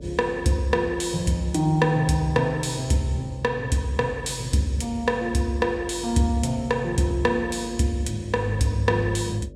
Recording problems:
hum; 50 Hz, harmonics up to 600 Hz, SNR 18 dB

